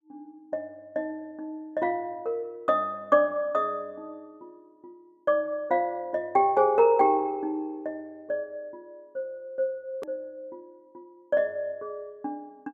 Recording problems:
hard cut with a click; at 10 s

